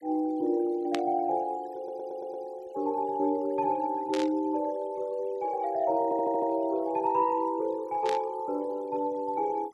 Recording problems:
denoising artefacts; signal-to-artefact ratio 27 dB
static burst; at 1 s, at 4 s and at 8 s; peak -1 dB vs average level
audio stuttering; at 2 s and at 6 s

